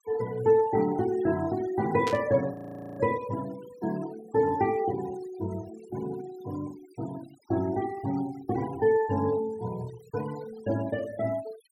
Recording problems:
noise reduction artefacts; signal-to-artefact ratio 19 dB
static burst; at 2 s; peak -3 dB vs average level
audio freezing; at 2.5 s

